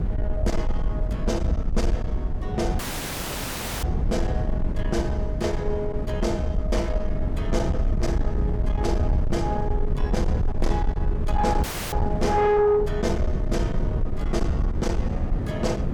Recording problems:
distortion; soft clipping, signal-to-distortion ratio 11 dB
electrical hum; 50 Hz, harmonics up to 400 Hz, SNR 16 dB
low-frequency rumble; below 60 Hz, SNR 3 dB
wind noise; below 200 Hz, SNR 3 dB
audio cutting out; at 3 s for 1 s and at 12 s

